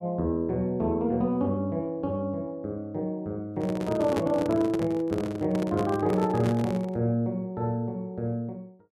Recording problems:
microphone handling noise; from 3.5 to 7 s; peak +1 dB vs average level

